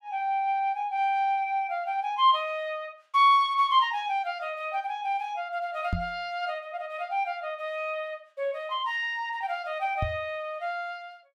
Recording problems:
microphone bump; at 6 s and at 10 s; peak +2 dB vs average level

